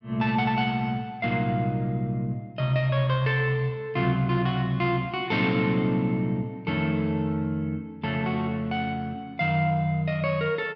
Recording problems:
none

